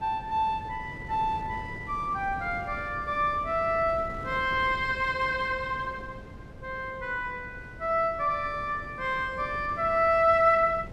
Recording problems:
wind on the microphone; below 370 Hz, SNR 16 dB

